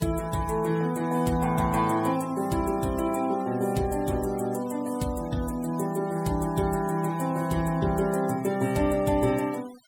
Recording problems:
noise reduction artefacts; signal-to-artefact ratio 20 dB

